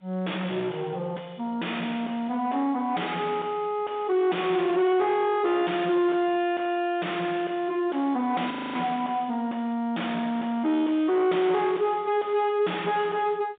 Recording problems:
phone line; 190 Hz to 3.6 kHz, G.711
distortion; soft clipping, signal-to-distortion ratio 5 dB
frozen audio; at 8.5 s

